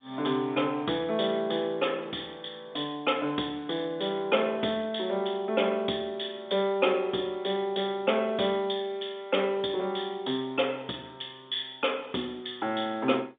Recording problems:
telephone audio; 240 Hz to 3.6 kHz, G.711

